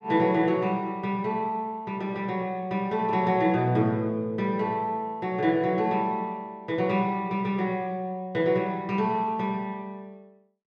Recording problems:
none

